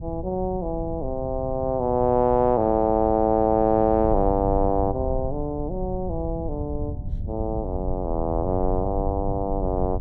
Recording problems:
low-frequency rumble; below 100 Hz, SNR 9 dB

